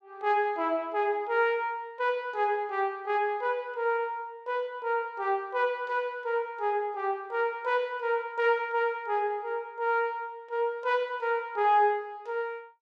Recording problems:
none

